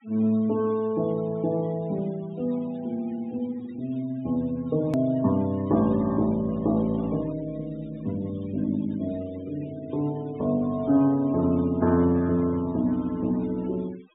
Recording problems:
treble missing; nothing above 4 kHz
denoising artefacts; signal-to-artefact ratio 24 dB
edit click; at 5 s

